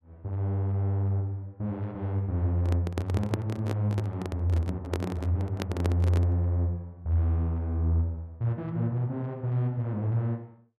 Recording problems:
microphone handling noise; from 2.5 to 6.5 s; peak +2 dB vs average level

